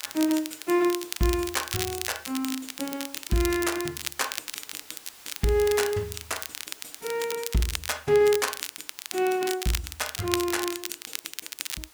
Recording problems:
hiss; slope 0 dB per octave, SNR 20 dB
crackle; vinyl, SNR 7 dB

